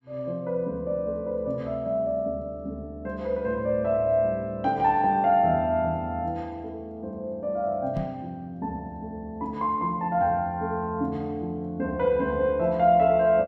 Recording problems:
knock on the microphone; at 8 s; peak -1 dB vs average level

